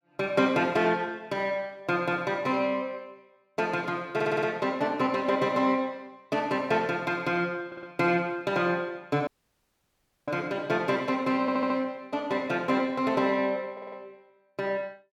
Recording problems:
audio stuttering; 4 times, first at 4 s
dropout; at 9.5 s for 1 s

